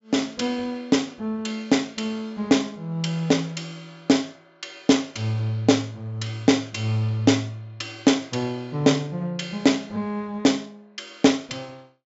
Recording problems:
treble cut off; nothing above 7.4 kHz

